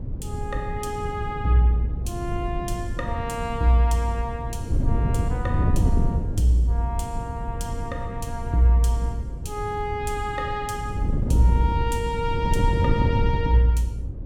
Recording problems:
wind noise; below 130 Hz, SNR 3 dB

